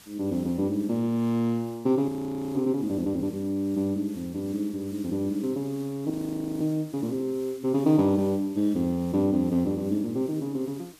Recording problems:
hiss; slope 0 dB per octave, SNR 24 dB
audio freezing; at 2 s and at 6 s for 0.5 s

